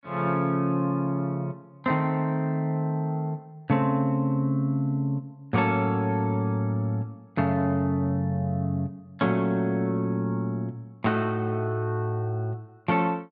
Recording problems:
none

